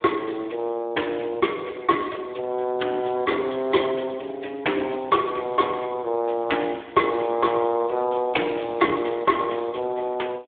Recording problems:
phone line; 260 Hz to 3.5 kHz, Speex

